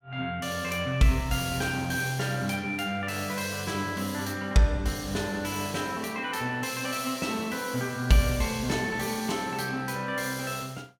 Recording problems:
none

